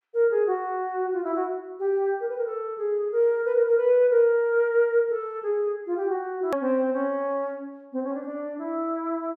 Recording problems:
click at an edit; at 6.5 s

